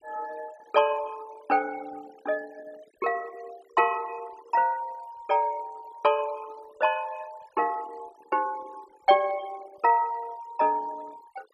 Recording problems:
denoising artefacts; signal-to-artefact ratio 23 dB

